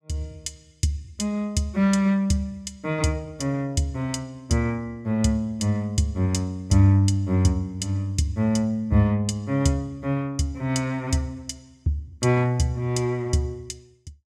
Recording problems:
none

